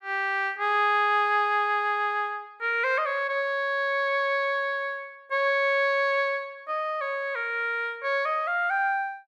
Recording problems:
none

